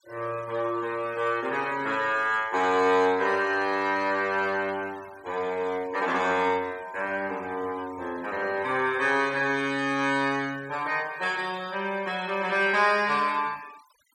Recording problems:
denoising artefacts; signal-to-artefact ratio 22 dB

